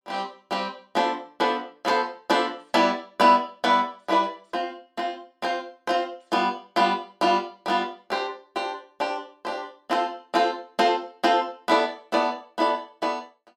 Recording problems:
none

